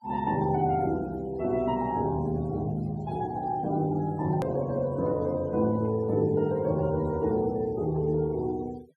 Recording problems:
denoising artefacts; signal-to-artefact ratio 27 dB
click at an edit; at 4.5 s

